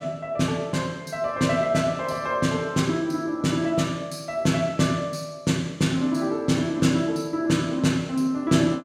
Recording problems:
none

